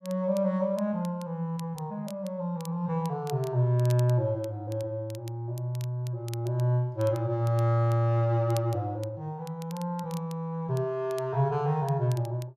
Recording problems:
crackle; vinyl, SNR 22 dB

